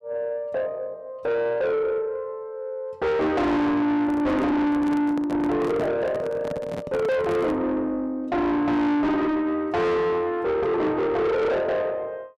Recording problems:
distortion; soft clipping, signal-to-distortion ratio 6 dB
handling noise; from 4 to 7.5 s; peak -2 dB vs average level

